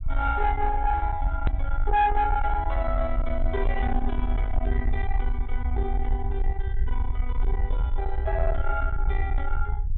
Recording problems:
treble missing; nothing above 4 kHz
distortion; soft clipping, signal-to-distortion ratio 11 dB
rumble; below 58 Hz, SNR 0 dB
edit click; at 1.5 s

